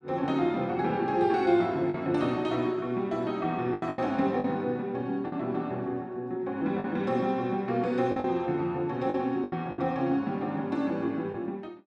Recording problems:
packet loss; 5% of the sound replaced, filled with the last packet

